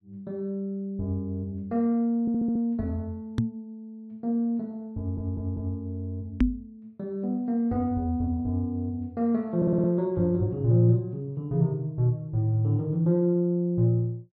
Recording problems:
stutter; at 2 s, at 5 s and at 9.5 s
microphone thump; at 3.5 s and at 6.5 s; peak +8 dB vs average level

